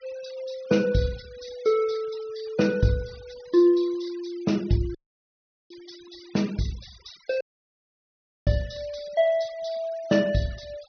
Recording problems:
low-pass filter; nothing above 6.3 kHz
noise reduction artefacts; signal-to-artefact ratio 22 dB
audio cutting out; at 5 s for 1 s and at 7.5 s for 1 s

